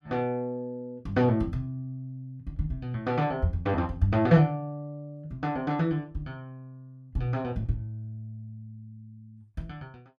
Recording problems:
none

